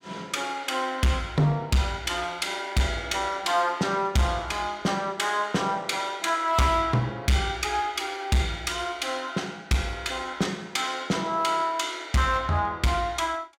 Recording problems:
distorted audio; hard clipping, signal-to-distortion ratio 11 dB

